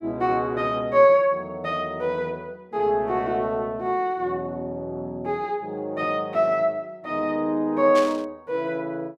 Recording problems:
static burst; at 8 s; peak -5 dB vs average level

